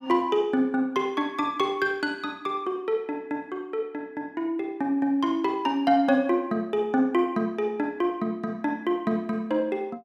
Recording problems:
none

